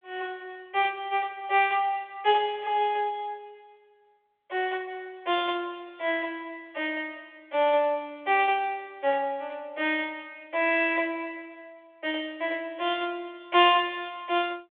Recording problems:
telephone audio; 280 Hz to 3.6 kHz, G.726

